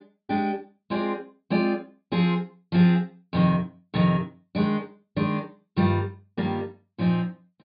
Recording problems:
treble missing; nothing above 4.9 kHz

